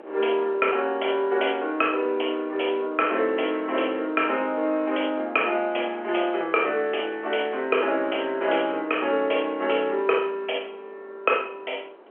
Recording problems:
phone line; 280 Hz to 3.2 kHz, G.711
wind on the microphone; below 900 Hz, SNR 23 dB

